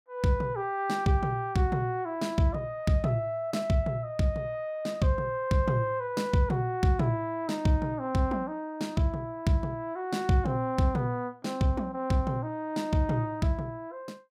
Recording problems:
none

